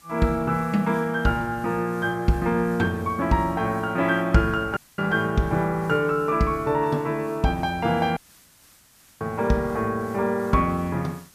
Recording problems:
hiss; slope 0 dB per octave, SNR 27 dB
audio cutting out; at 5 s and at 8 s for 1 s

